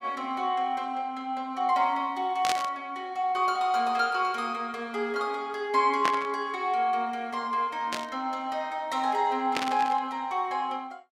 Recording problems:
burst of static; 4 times, first at 2.5 s; peak +3 dB vs average level

